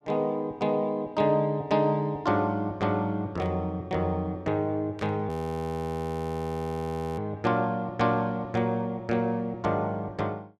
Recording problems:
static burst; at 3.5 s and at 5 s; peak -15 dB vs average level
audio freezing; at 5.5 s for 2 s

